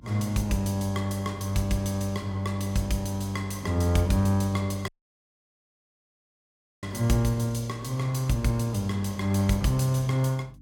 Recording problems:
hum; 50 Hz, harmonics up to 300 Hz, SNR 24 dB
audio cutting out; at 5 s for 2 s

